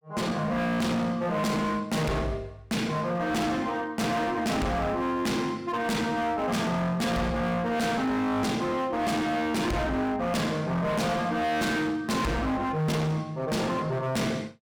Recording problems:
distortion; hard clipping, signal-to-distortion ratio 6 dB

